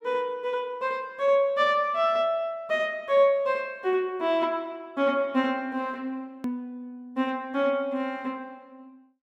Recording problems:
hard cut with a click; at 6.5 s

